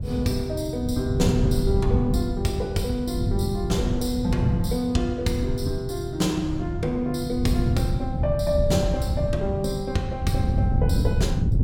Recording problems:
wind noise; below 140 Hz, SNR 1 dB

